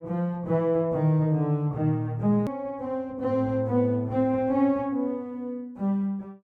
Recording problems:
click at an edit; at 2.5 s

